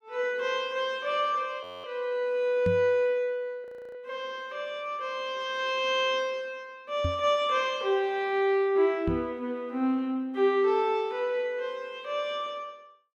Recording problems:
audio freezing; at 1.5 s and at 3.5 s
microphone bump; at 2.5 s, at 7 s and at 9 s; peak +1 dB vs average level

